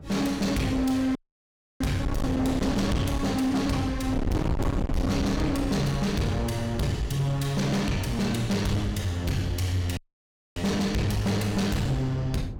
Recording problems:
distorted audio; hard clipping, uneven, signal-to-distortion ratio 6 dB
wind on the microphone; below 260 Hz, SNR 7 dB
dropout; at 1 s for 0.5 s and at 10 s for 0.5 s

